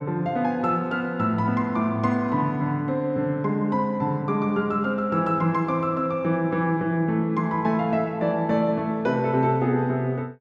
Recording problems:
none

